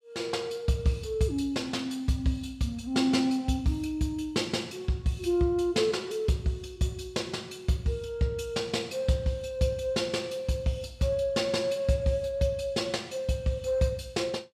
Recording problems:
none

